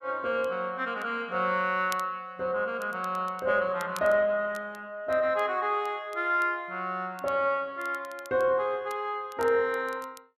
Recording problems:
crackling; vinyl, SNR 23 dB

